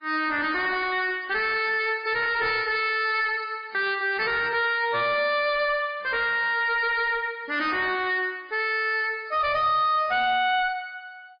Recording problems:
lossy compression; MP3, log-spectral distance 3 dB, nothing above 4.1 kHz
distortion; soft clipping, signal-to-distortion ratio 7 dB

